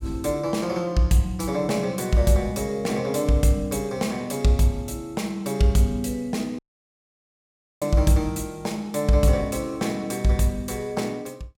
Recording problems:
audio cutting out; at 6.5 s for 1 s

